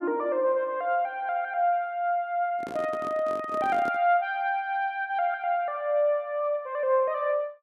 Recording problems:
handling noise; from 2.5 to 4 s; peak -7 dB vs average level

